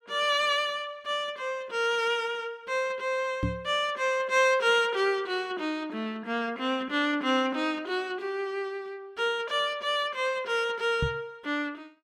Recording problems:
microphone bump; at 3.5 s and at 11 s; peak +2 dB vs average level

